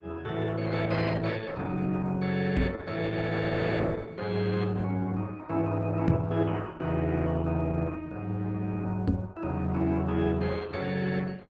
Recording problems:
codec artefacts; Opus, log-spectral distance 4 dB, nothing above 7.3 kHz
microphone thump; at 2.5 s, at 6 s and at 9 s; peak +8 dB vs average level

